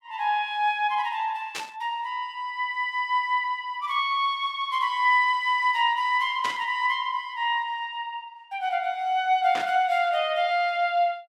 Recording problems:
burst of static; at 1.5 s, at 6.5 s and at 9.5 s; peak -4 dB vs average level

